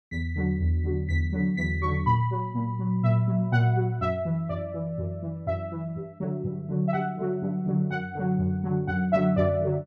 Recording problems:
none

